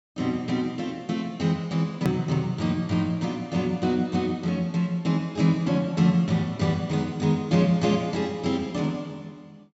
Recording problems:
low-pass filter; nothing above 8 kHz
hard cut with a click; at 2 s

